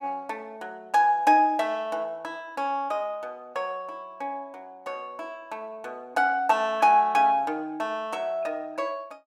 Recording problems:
none

